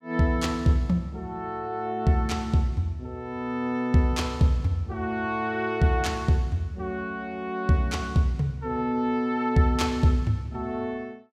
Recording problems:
none

